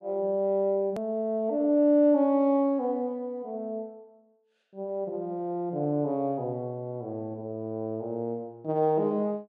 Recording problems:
click at an edit; at 1 s

